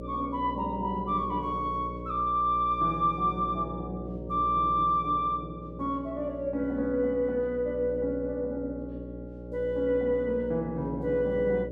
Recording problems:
hum; 60 Hz, harmonics up to 600 Hz, SNR 11 dB

